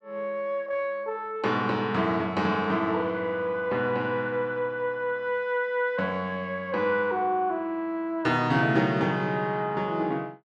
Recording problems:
none

